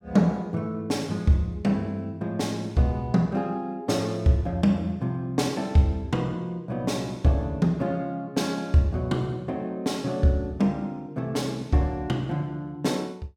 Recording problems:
none

